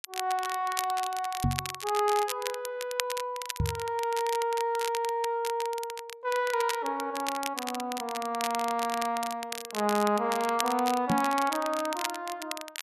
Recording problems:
crackling; vinyl, SNR 8 dB
microphone bump; at 1.5 s, at 3.5 s and at 11 s; peak +6 dB vs average level

